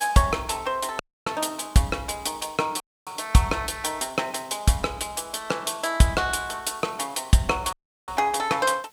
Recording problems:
hiss; slope 0 dB per octave, SNR 30 dB
dropout; at 1 s, at 3 s and at 7.5 s

